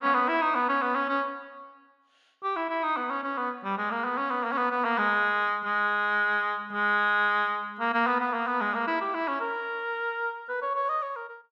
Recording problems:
none

